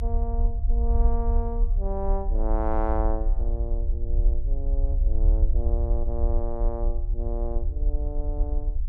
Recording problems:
low-frequency rumble; below 54 Hz, strongest tone 34 Hz, SNR -7 dB

